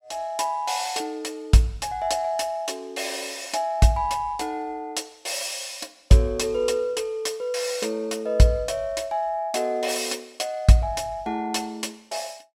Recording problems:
none

